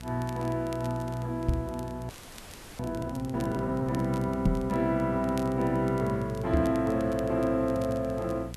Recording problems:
mains hum; 60 Hz, harmonics up to 720 Hz, SNR 12 dB
hiss; slope -3 dB per octave, SNR 27 dB
crackling; vinyl, SNR 23 dB
knock on the microphone; at 1.5 s, at 4.5 s and at 6.5 s; peak +6 dB vs average level
frozen audio; at 2 s for 0.5 s

